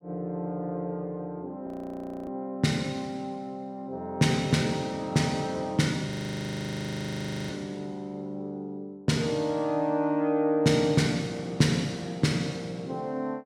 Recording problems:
audio freezing; at 1.5 s for 0.5 s and at 6 s for 1.5 s

